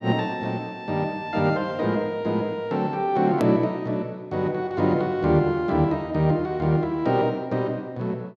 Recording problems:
hard cut with a click; at 3.5 s

